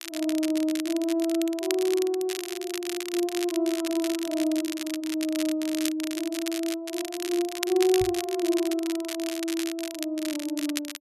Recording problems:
crackling; vinyl, SNR 8 dB
microphone thump; at 8 s; peak -4 dB vs average level

